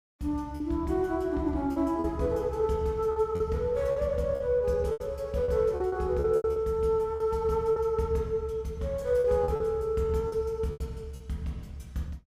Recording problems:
lost packets; 8% of the sound replaced, filled with repeated pitch periods

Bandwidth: 15.5 kHz